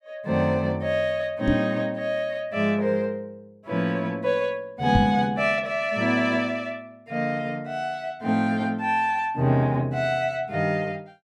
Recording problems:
microphone bump; at 1.5 s and at 5 s; peak +6 dB vs average level

